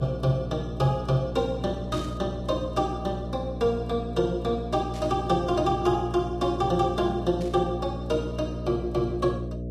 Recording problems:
lossy compression; Vorbis, log-spectral distance 2 dB, nothing above 14.3 kHz
hum; 60 Hz, harmonics up to 660 Hz, SNR 7 dB
static burst; at 2 s, at 5 s and at 7.5 s; peak -13 dB vs average level

